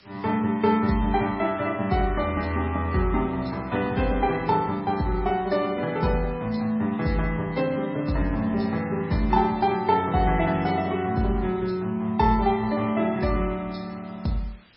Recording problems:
codec artefacts; MP3, log-spectral distance 5 dB, nothing above 5.3 kHz
hiss; SNR 29 dB

